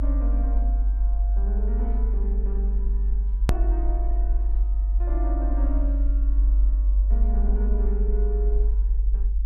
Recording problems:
rumble; below 50 Hz, strongest tone 48 Hz, SNR -13 dB
click at an edit; at 3.5 s

